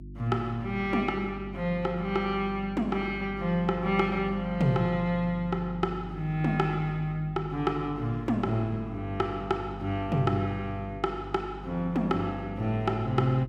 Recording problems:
hum; 50 Hz, harmonics up to 350 Hz, SNR 13 dB

